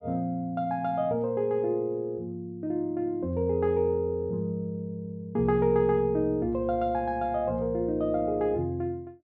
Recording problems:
none

